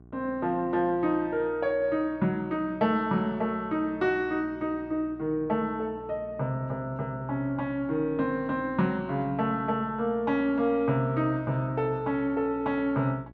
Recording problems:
mains hum; 60 Hz, harmonics up to 1.1 kHz, SNR 22 dB

